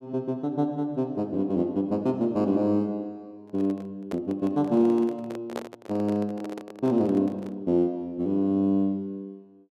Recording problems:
handling noise; from 3.5 to 7.5 s; peak -2 dB vs average level

